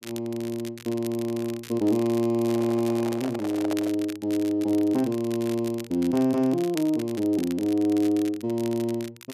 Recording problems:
crackling; vinyl, SNR 18 dB
handling noise; from 2.5 to 4 s; peak -4 dB vs average level

